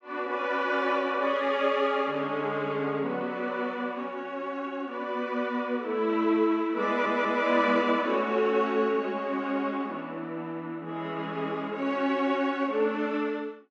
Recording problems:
audio stuttering; at 7 s

